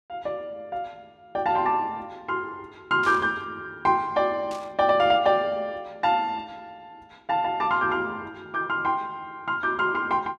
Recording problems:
burst of static; at 3 s and at 4.5 s; peak -11 dB vs average level

